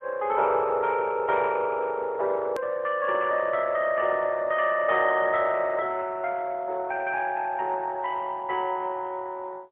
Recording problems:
telephone audio; 340 Hz to 3.7 kHz, AMR-NB, then MP3
hard cut with a click; at 2.5 s

